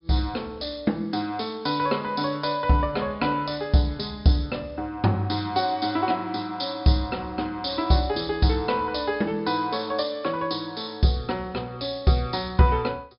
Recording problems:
low-pass filter; nothing above 5.5 kHz

